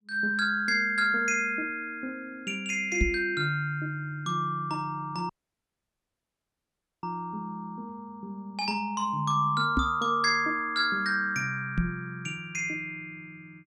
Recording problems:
microphone bump; at 3 s, at 10 s and at 12 s; peak +5 dB vs average level
audio cutting out; at 5.5 s for 1.5 s

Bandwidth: 12.5 kHz